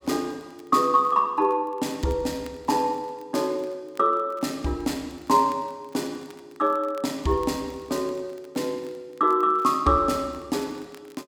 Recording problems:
crackling; vinyl, SNR 30 dB

